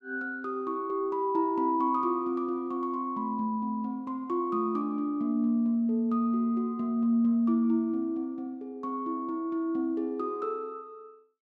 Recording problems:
none

